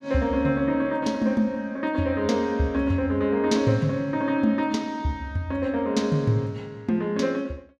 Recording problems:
none

